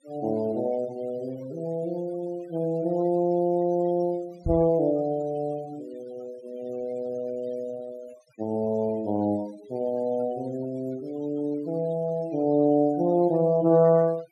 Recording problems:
noise reduction artefacts; signal-to-artefact ratio 23 dB
knock on the microphone; at 4.5 s; peak 0 dB vs average level

